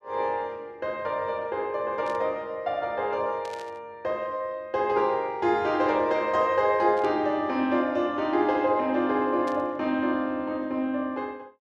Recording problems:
burst of static; 4 times, first at 2 s; peak -13 dB vs average level

